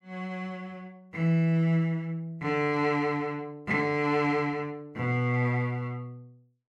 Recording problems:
none

